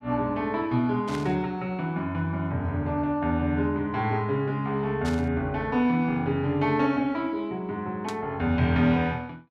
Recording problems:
burst of static; at 1 s, at 5 s and at 8 s; peak -8 dB vs average level

